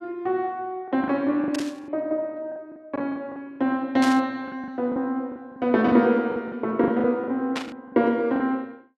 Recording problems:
packet loss; 11% of the sound replaced, filled with the last packet
burst of static; at 1.5 s, at 4 s and at 7.5 s; peak -2 dB vs average level

